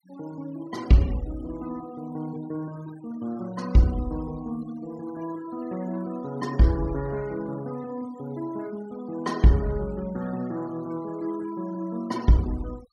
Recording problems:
denoising artefacts; signal-to-artefact ratio 21 dB

